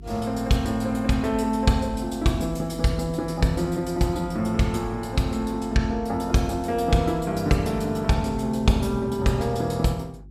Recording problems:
hum; 50 Hz, harmonics up to 400 Hz, SNR 18 dB

